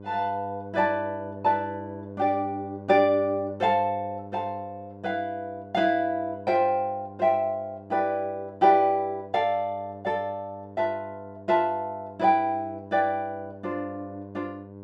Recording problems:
electrical hum; 50 Hz, harmonics up to 1.1 kHz, SNR 16 dB

